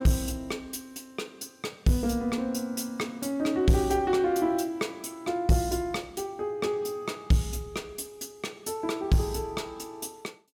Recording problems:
distorted audio; soft clipping, signal-to-distortion ratio 11 dB

